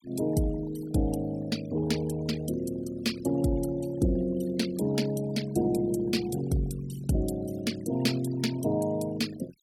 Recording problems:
noise reduction artefacts; signal-to-artefact ratio 16 dB

